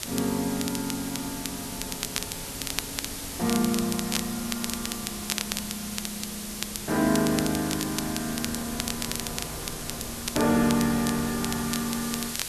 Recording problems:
hiss; slope +4 dB per octave, SNR 6 dB
wind on the microphone; below 690 Hz, SNR 13 dB
crackle; vinyl, SNR 6 dB

